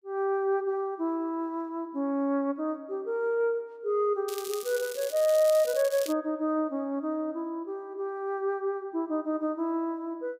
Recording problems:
crackling; from 4.5 to 6 s; loose cable, SNR 11 dB

